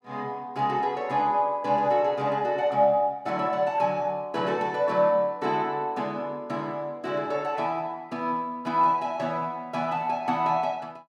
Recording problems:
none

